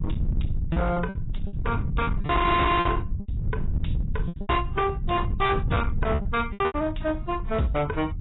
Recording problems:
lossy compression; AAC, log-spectral distance 3 dB, nothing above 3.8 kHz
distorted audio; hard clipping, signal-to-distortion ratio 7 dB
rumble; below 140 Hz, SNR 4 dB
packet loss; 10% of the sound replaced, filled with repeated pitch periods

